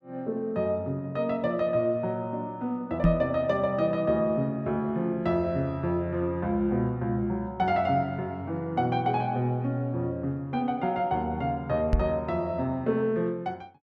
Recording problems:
microphone thump; at 3 s and at 12 s; peak +9 dB vs average level

